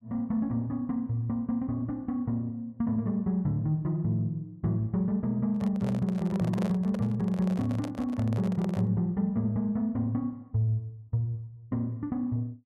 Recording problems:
microphone handling noise; from 5.5 to 9 s; peak -4 dB vs average level

